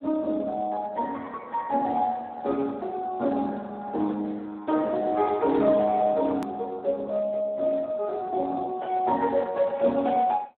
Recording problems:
telephone audio; 240 Hz to 2.8 kHz, Speex
hard cut with a click; at 6.5 s

